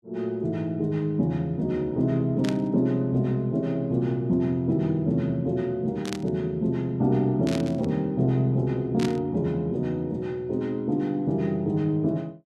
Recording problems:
static burst; 4 times, first at 2.5 s; peak -5 dB vs average level

